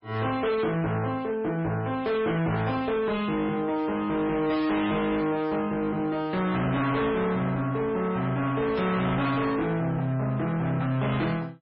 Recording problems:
lossy compression; MP3, log-spectral distance 3 dB, nothing above 4.9 kHz
distortion; hard clipping, uneven, signal-to-distortion ratio 7 dB

